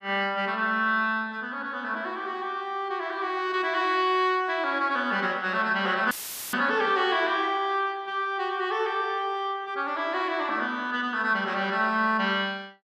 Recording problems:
dropout; at 6 s; filled with static

